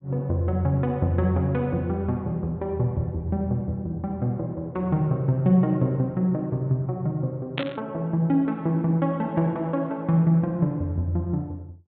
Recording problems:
treble missing; nothing above 4 kHz
static burst; at 7.5 s; peak 0 dB vs average level

